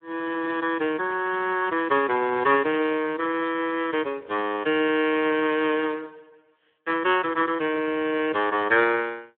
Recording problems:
phone line; 300 Hz to 3.5 kHz, Speex

